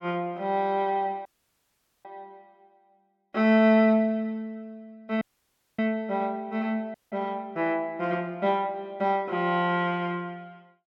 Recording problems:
dropout; at 1.5 s for 1 s, at 5 s for 0.5 s and at 7 s

